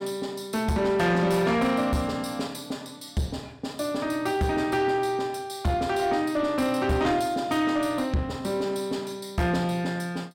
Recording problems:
distortion; soft clipping, signal-to-distortion ratio 12 dB

